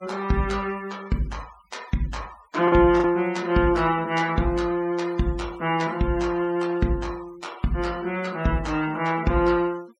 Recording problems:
denoising artefacts; signal-to-artefact ratio 23 dB
packet loss; 0.8% of the sound replaced, filled with the last packet

